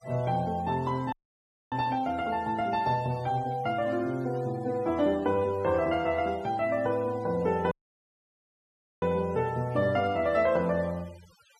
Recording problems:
noise reduction artefacts; signal-to-artefact ratio 24 dB
dropout; at 1 s for 0.5 s and at 7.5 s for 1.5 s

